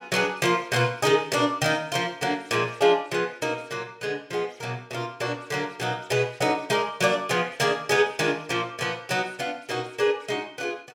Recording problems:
none

